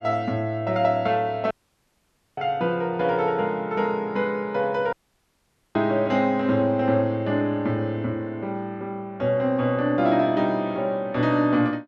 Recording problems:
audio cutting out; at 1.5 s for 1 s and at 5 s for 1 s

